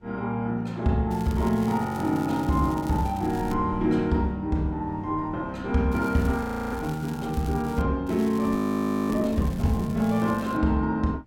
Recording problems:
wind noise; below 180 Hz, SNR 18 dB
crackling; from 1 to 3.5 s, from 6 to 8 s and from 8 to 11 s; loose cable, SNR 21 dB
frozen audio; at 6.5 s and at 8.5 s for 0.5 s

